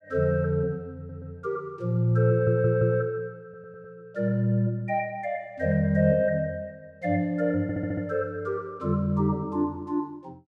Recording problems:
stutter; 4 times, first at 1 s

